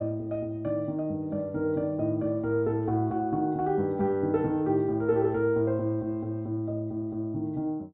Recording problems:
treble missing; nothing above 4 kHz

